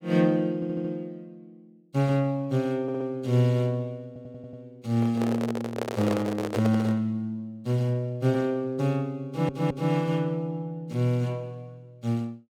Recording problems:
stutter; 4 times, first at 0.5 s
microphone handling noise; from 5 to 7 s; peak +1 dB vs average level

